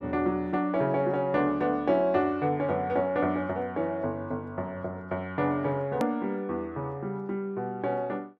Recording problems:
hard cut with a click; at 6 s

